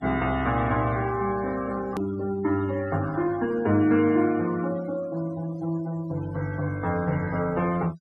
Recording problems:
denoising artefacts; signal-to-artefact ratio 20 dB
click at an edit; at 2 s

